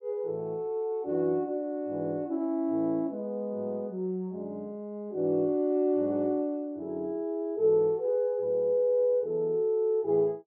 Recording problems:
none

